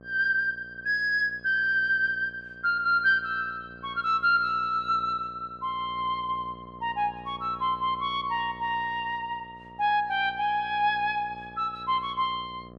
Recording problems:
hum; 60 Hz, harmonics up to 1.3 kHz, SNR 22 dB

